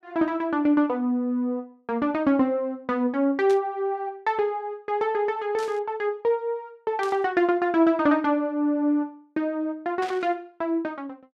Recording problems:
burst of static; 4 times, first at 3.5 s; peak -10 dB vs average level

